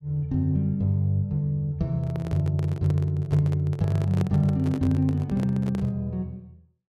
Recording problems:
handling noise; from 2 to 6 s; peak -4 dB vs average level

